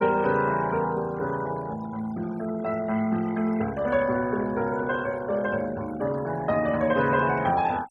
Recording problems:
noise reduction artefacts; signal-to-artefact ratio 18 dB

